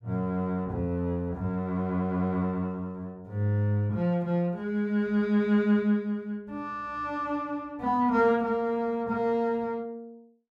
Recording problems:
none

